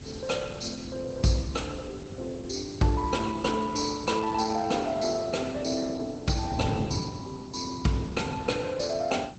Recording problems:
lossy codec; Opus, log-spectral distance 6 dB, nothing above 7.1 kHz
hiss; slope -1 dB per octave, SNR 24 dB
wind noise; below 210 Hz, SNR 9 dB

